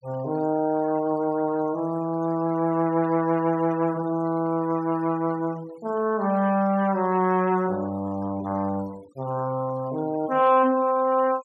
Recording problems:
noise reduction artefacts; signal-to-artefact ratio 24 dB

